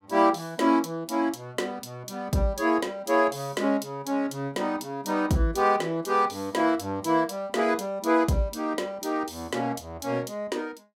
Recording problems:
none

